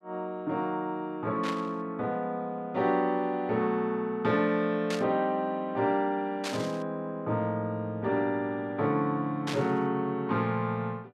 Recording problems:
static burst; 4 times, first at 1.5 s; peak -1 dB vs average level

